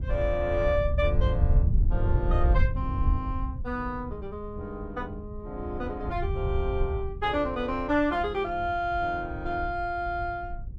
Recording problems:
wind noise; below 86 Hz, SNR 0 dB

